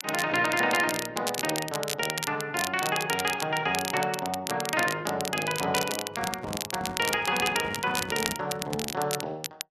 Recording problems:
crackle; vinyl, SNR 5 dB
handling noise; from 6 to 9 s; peak -5 dB vs average level

